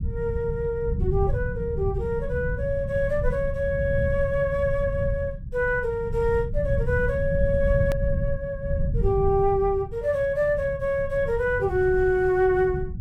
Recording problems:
low-frequency rumble; below 130 Hz, SNR 5 dB
click at an edit; at 8 s

